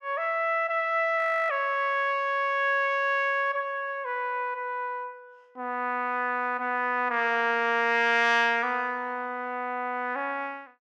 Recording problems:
frozen audio; at 1 s

